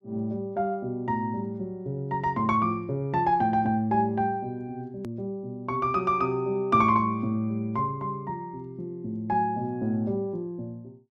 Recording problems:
hard cut with a click; at 5 s

